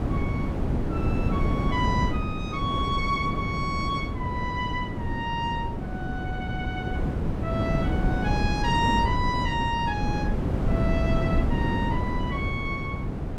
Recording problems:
wind noise; below 270 Hz, SNR -2 dB

